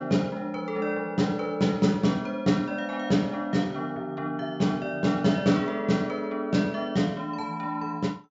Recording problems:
treble missing; nothing above 8 kHz

